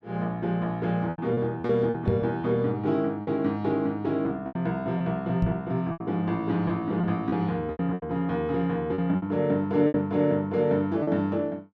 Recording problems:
lost packets; 8% of the sound replaced, filled with repeated pitch periods
microphone bump; at 2 s and at 5.5 s; peak +4 dB vs average level

